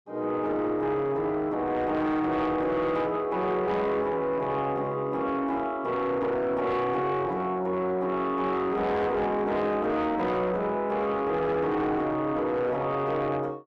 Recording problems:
distorted audio; soft clipping, signal-to-distortion ratio 10 dB

